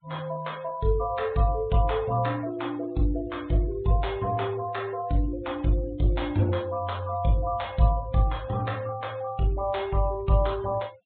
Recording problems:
treble cut off; nothing above 4 kHz
noise reduction artefacts; signal-to-artefact ratio 24 dB

